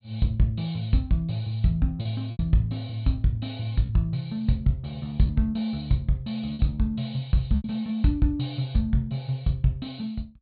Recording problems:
treble cut off; nothing above 4.5 kHz
packet loss; 3% of the sound replaced, filled with repeated pitch periods

